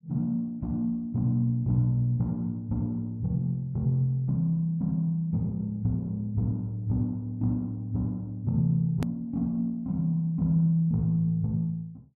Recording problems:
edit click; at 9 s

